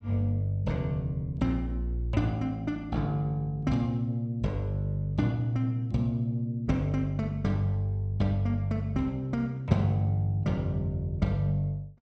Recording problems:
none

